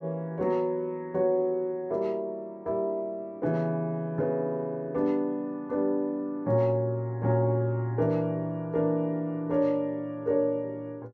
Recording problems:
none

